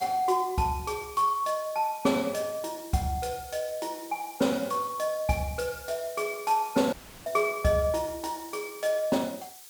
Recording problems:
hiss; slope +2 dB per octave, SNR 16 dB
audio cutting out; at 7 s

